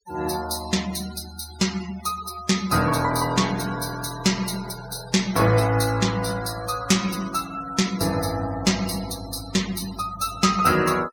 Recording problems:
denoising artefacts; signal-to-artefact ratio 13 dB

